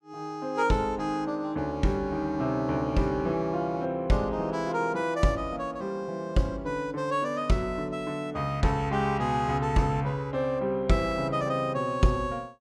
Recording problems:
none

